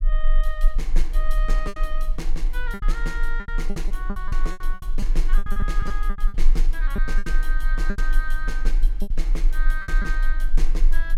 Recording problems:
rumble; below 30 Hz, strongest tone 22 Hz, SNR -8 dB
lost packets; 11% of the sound replaced, filled with repeated pitch periods

